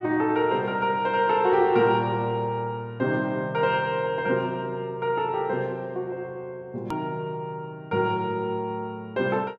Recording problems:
click at an edit; at 7 s

